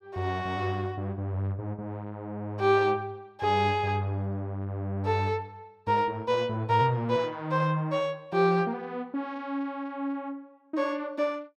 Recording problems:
none

